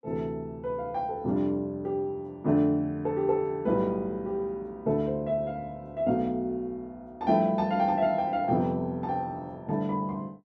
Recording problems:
none

